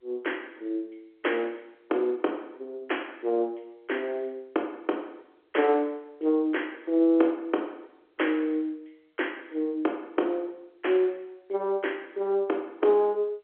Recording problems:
phone line; 280 Hz to 3.5 kHz, G.711

